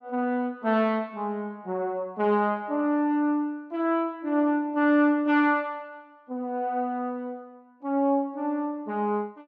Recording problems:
none

